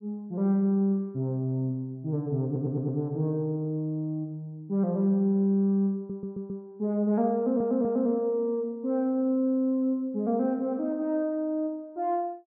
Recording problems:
audio stuttering; at 2.5 s, at 6 s and at 7.5 s

